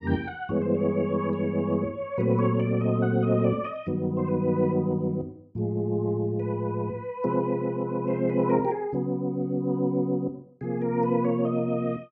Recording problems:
none

